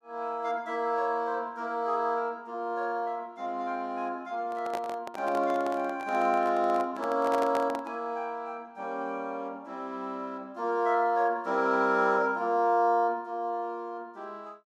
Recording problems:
handling noise; from 4.5 to 8 s; peak -1 dB vs average level

